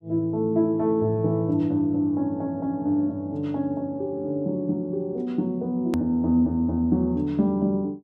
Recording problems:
edit click; at 6 s

